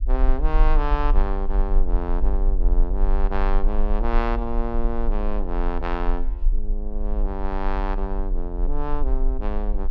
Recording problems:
low-frequency rumble; below 38 Hz, strongest tone 24 Hz, SNR -4 dB

